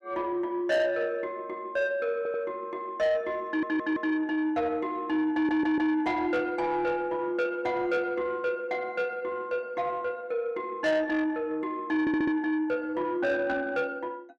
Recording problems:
distortion; soft clipping, signal-to-distortion ratio 11 dB
audio stuttering; 4 times, first at 2 s

